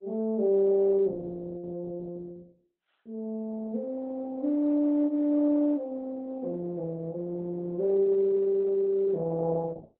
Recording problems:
lossy codec; Opus, log-spectral distance 2 dB

